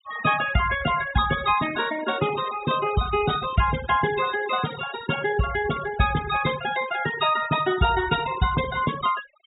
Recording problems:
treble cut off; nothing above 4 kHz
denoising artefacts; signal-to-artefact ratio 12 dB

